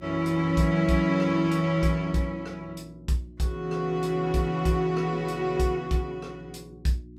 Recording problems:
hum; 60 Hz, harmonics up to 360 Hz, SNR 22 dB

